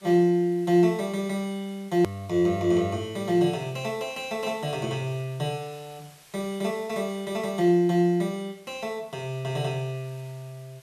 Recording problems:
background hiss; slope 0 dB per octave, SNR 27 dB
edit click; at 2 s

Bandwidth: 13 kHz